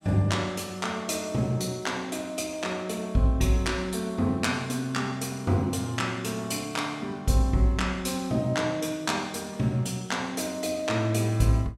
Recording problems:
none

